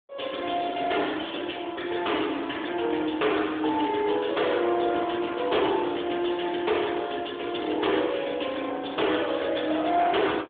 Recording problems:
phone line; 240 Hz to 3.6 kHz, AMR-NB
distortion; hard clipping, uneven, signal-to-distortion ratio 10 dB

